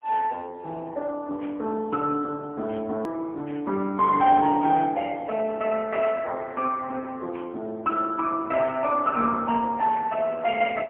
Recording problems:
phone line; 170 Hz to 3.1 kHz, AMR-NB, then MP3
edit click; at 3 s

